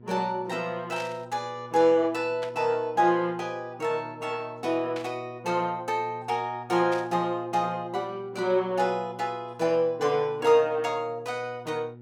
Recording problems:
hum; 60 Hz, harmonics up to 600 Hz, SNR 21 dB
static burst; 4 times, first at 1 s; peak -9 dB vs average level

